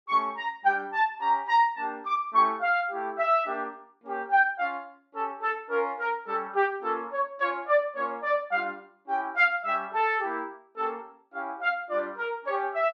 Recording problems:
none

